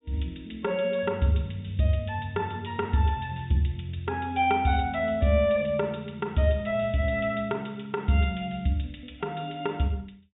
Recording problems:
treble cut off; nothing above 4 kHz

